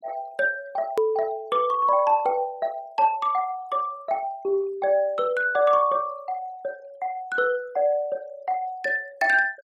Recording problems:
denoising artefacts; signal-to-artefact ratio 26 dB
edit click; at 1 s

